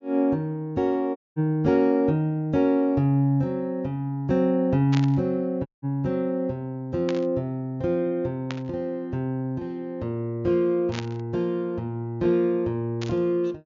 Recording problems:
treble missing; nothing above 7.3 kHz
audio cutting out; at 1 s and at 5.5 s
burst of static; 5 times, first at 5 s; peak -5 dB vs average level

